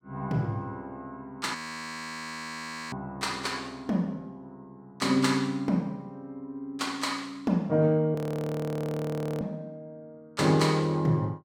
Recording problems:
audio freezing; at 1.5 s for 1.5 s and at 8 s for 1.5 s

